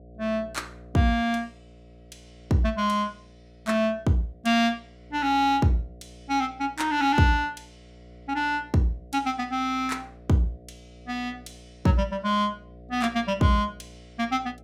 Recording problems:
hum; 60 Hz, harmonics up to 720 Hz, SNR 23 dB

